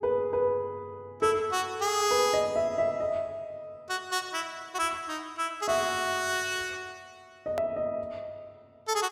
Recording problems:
hard cut with a click; at 7.5 s

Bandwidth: 17 kHz